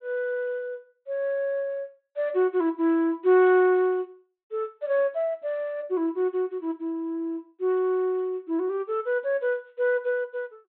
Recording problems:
treble missing; nothing above 4 kHz

